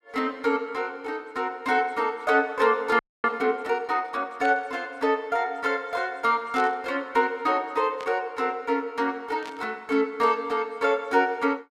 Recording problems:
audio freezing; at 3 s
burst of static; 4 times, first at 4.5 s; peak -10 dB vs average level

